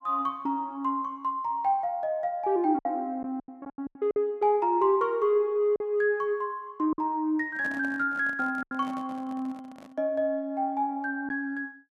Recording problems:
packet loss; 5% of the sound replaced, filled with silence
handling noise; from 7.5 to 10 s; peak -9 dB vs average level

